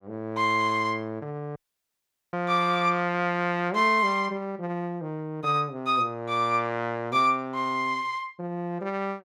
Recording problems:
audio cutting out; at 1.5 s for 1 s

